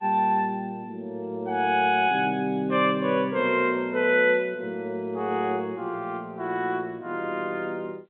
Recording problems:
phone line; 130 Hz to 3.6 kHz, G.711

